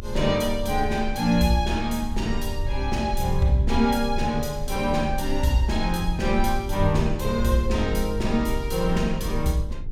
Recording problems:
hum; 50 Hz, harmonics up to 900 Hz, SNR 24 dB
low-frequency rumble; below 62 Hz, strongest tone 20 Hz, SNR 8 dB

